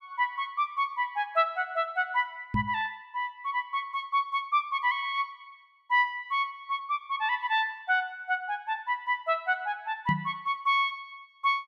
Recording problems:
knock on the microphone; at 2.5 s and at 10 s; peak +3 dB vs average level

